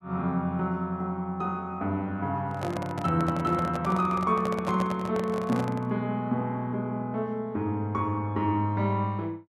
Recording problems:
handling noise; from 2.5 to 6 s; peak -2 dB vs average level

